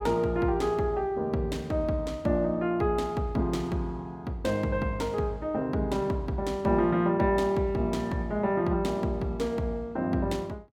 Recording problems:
none

